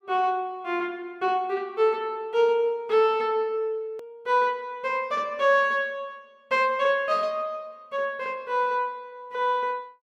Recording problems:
edit click; at 4 s

